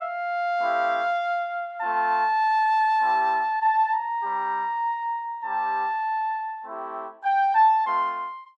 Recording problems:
none

